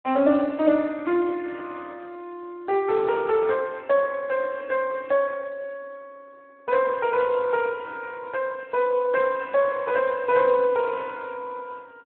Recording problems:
telephone audio; 150 Hz to 2.6 kHz, Speex

